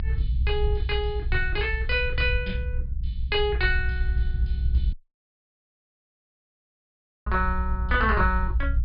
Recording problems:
treble cut off; nothing above 5 kHz
low-frequency rumble; below 64 Hz, SNR 2 dB
audio cutting out; at 5 s for 2.5 s

